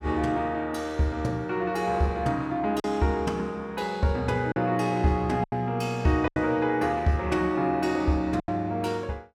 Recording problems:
packet loss; 3% of the sound replaced, filled with silence

